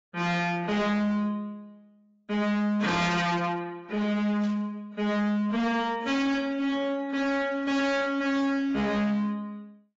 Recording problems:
codec artefacts; AAC, log-spectral distance 2 dB, nothing above 7.3 kHz
distortion; hard clipping, signal-to-distortion ratio 7 dB
burst of static; at 4.5 s, at 6 s and at 8 s; peak -15 dB vs average level

